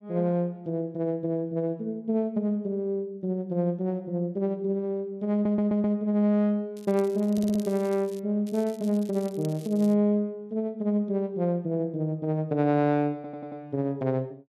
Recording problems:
stutter; at 5.5 s, at 7.5 s and at 13 s
crackling; from 7 to 8 s and from 8.5 to 10 s; loose cable, SNR 22 dB

